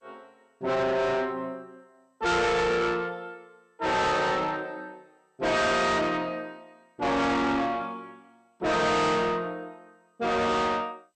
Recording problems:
lossy compression; MP2, log-spectral distance 2 dB, nothing above 8.5 kHz
distortion; soft clipping, signal-to-distortion ratio 6 dB

